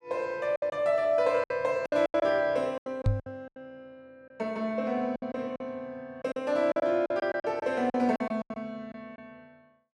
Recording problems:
packet loss; 13% of the sound replaced, filled with silence
microphone thump; at 3 s; peak +6 dB vs average level

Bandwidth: 12.5 kHz